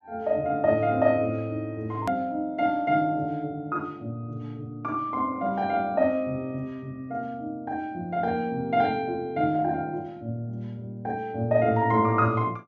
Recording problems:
treble cut off; nothing above 8 kHz
click at an edit; at 2 s

